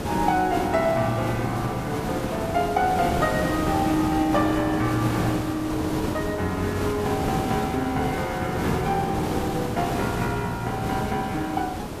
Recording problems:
hiss; slope -7 dB per octave, SNR 4 dB

